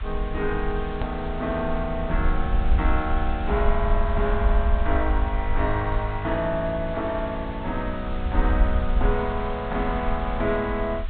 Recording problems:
treble cut off; nothing above 4 kHz
hiss; SNR 15 dB
rumble; below 60 Hz, SNR 2 dB
edit click; at 1 s

